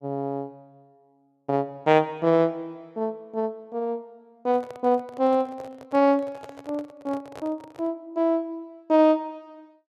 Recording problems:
handling noise; from 4.5 to 8 s; peak -12 dB vs average level

